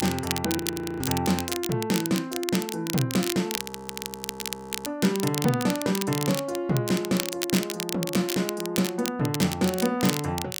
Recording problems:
crackle; vinyl, SNR 6 dB
audio freezing; at 0.5 s and at 3.5 s for 1.5 s

